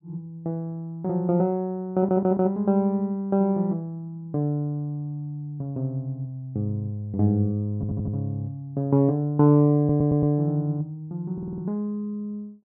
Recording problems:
audio stuttering; 4 times, first at 2 s

